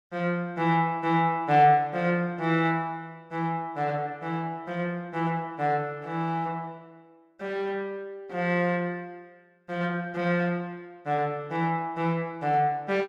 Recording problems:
none

